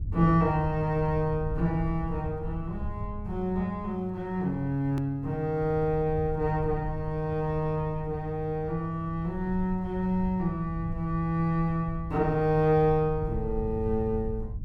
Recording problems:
hum; 50 Hz, harmonics up to 300 Hz, SNR 19 dB
low-frequency rumble; below 98 Hz, SNR 11 dB
edit click; at 5 s

